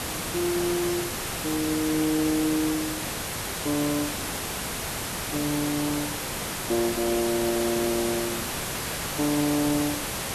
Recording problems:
hiss; slope -3 dB per octave, SNR 2 dB

